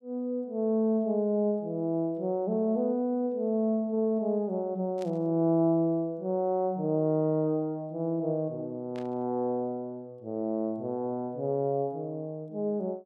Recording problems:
static burst; at 5 s and at 9 s; peak -15 dB vs average level

